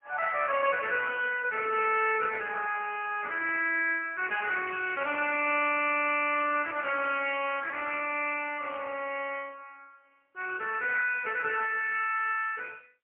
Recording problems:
telephone audio; 340 Hz to 3 kHz, AMR-NB, then MP3

